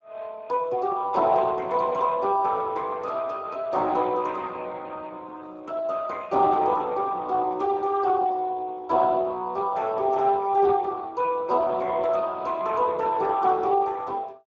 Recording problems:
lossy compression; Speex, log-spectral distance 3 dB

